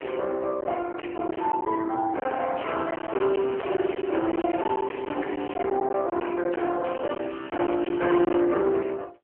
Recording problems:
phone line; 280 Hz to 3 kHz, AMR-NB
distortion; hard clipping, uneven, signal-to-distortion ratio 10 dB
lost packets; 7% of the sound replaced, filled with silence
crackle; from 2.5 to 5.5 s and from 7 to 8.5 s; loose cable, SNR 18 dB

